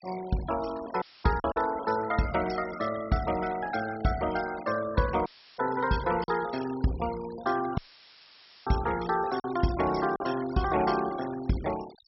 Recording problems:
treble cut off; nothing above 5.5 kHz
noise reduction artefacts; signal-to-artefact ratio 16 dB
packet loss; 2% of the sound replaced, filled with silence
dropout; at 1 s, at 5.5 s and at 8 s for 1 s; filled with static

